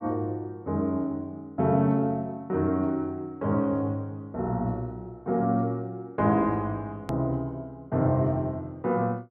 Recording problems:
hard cut with a click; at 7 s

